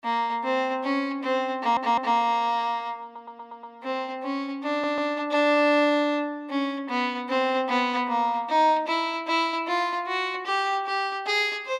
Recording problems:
audio stuttering; at 1.5 s, at 3 s and at 4.5 s

